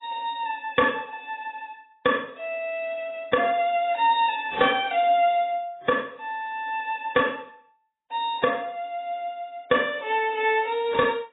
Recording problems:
lossy compression; AAC, then AAC, log-spectral distance 3 dB, nothing above 3.8 kHz
distortion; hard clipping, signal-to-distortion ratio 11 dB

